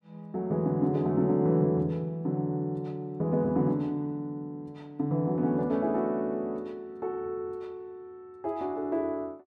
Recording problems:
none

